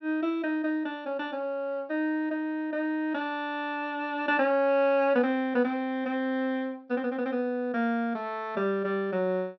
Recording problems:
treble cut off; nothing above 5.8 kHz

